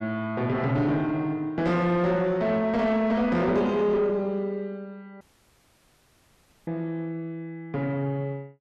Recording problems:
distortion; soft clipping, signal-to-distortion ratio 10 dB
dropout; at 5 s for 1.5 s

